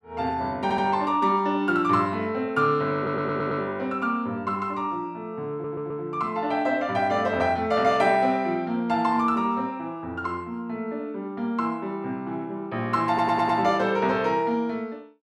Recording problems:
audio stuttering; 4 times, first at 0.5 s

